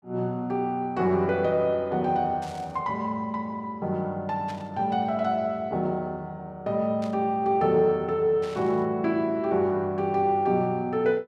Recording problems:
burst of static; 4 times, first at 2.5 s; peak -13 dB vs average level

